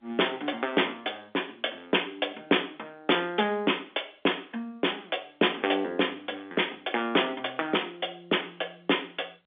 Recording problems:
telephone audio; 240 Hz to 3.6 kHz, G.711

